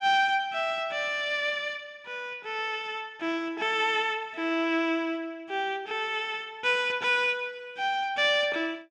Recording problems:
none

